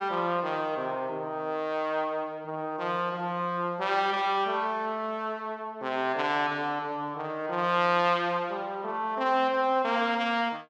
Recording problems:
none

